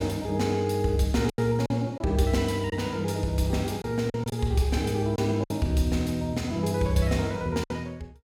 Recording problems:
packet loss; 5% of the sound replaced, filled with silence

